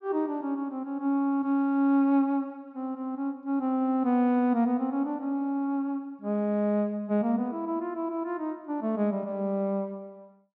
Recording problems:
none

